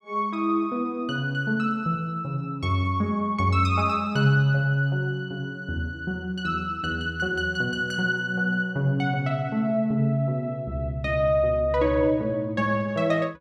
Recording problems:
none

